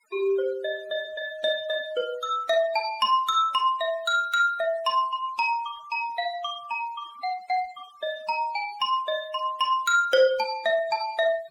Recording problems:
noise reduction artefacts; signal-to-artefact ratio 20 dB

